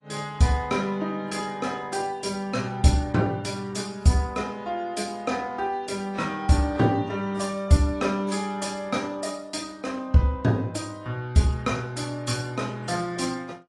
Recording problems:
lossy codec; AAC, log-spectral distance 3 dB, nothing above 10.7 kHz

